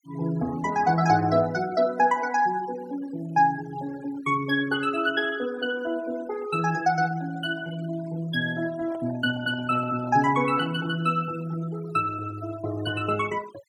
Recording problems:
noise reduction artefacts; signal-to-artefact ratio 20 dB
microphone handling noise; from 8.5 to 11 s; peak -13 dB vs average level

